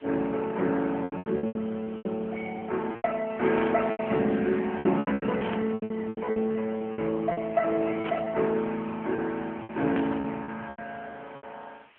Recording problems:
phone line; 150 Hz to 3.3 kHz, AMR-NB
hiss; SNR 27 dB
packet loss; 14% of the sound replaced, filled with repeated pitch periods
static burst; 4 times, first at 3.5 s; peak -5 dB vs average level

